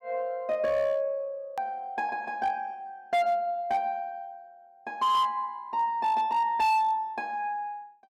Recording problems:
distortion; hard clipping, signal-to-distortion ratio 10 dB
hard cut with a click; at 1.5 s

